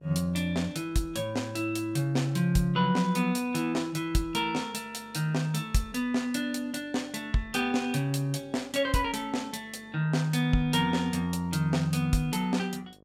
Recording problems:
hum; 50 Hz, harmonics up to 1.1 kHz, SNR 29 dB

